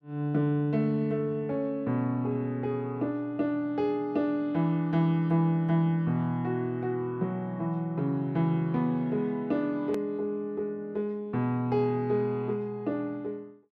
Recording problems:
click at an edit; at 10 s

